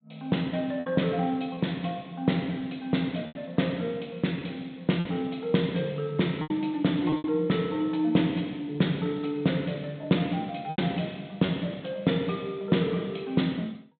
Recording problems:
low-pass filter; nothing above 4 kHz
lost packets; 4% of the sound replaced, filled with repeated pitch periods

